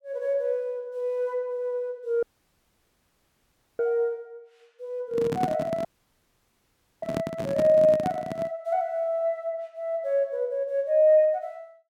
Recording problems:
audio cutting out; at 2 s for 1.5 s and at 6 s for 1 s
handling noise; from 5 to 8.5 s; peak +2 dB vs average level

